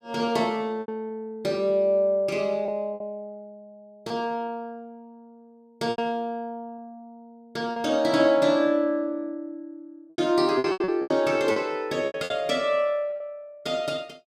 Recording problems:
packet loss; 7% of the sound replaced, filled with repeated pitch periods

